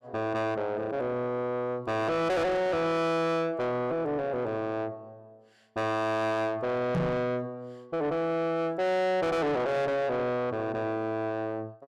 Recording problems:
distorted audio; soft clipping, signal-to-distortion ratio 6 dB
knock on the microphone; at 7 s; peak +5 dB vs average level

